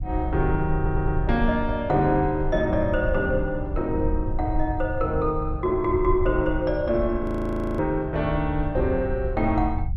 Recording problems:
rumble; below 84 Hz, SNR 6 dB
stutter; at 1 s
frozen audio; at 7 s for 0.5 s

